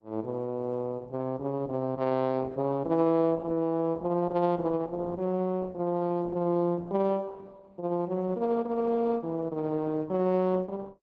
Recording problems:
codec artefacts; Opus, log-spectral distance 2 dB

